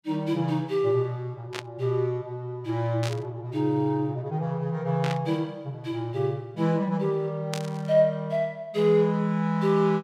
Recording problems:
burst of static; 4 times, first at 1.5 s; peak -3 dB vs average level

